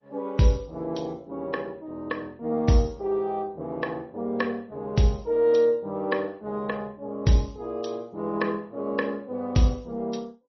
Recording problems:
lossy codec; MP3, then Opus, log-spectral distance 2 dB, nothing above 5.8 kHz

